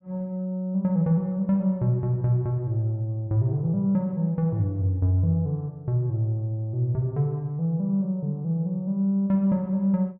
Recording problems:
none

